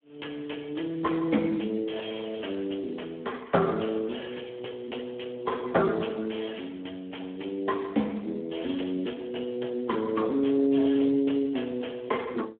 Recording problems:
phone line; 190 Hz to 3.6 kHz, Speex

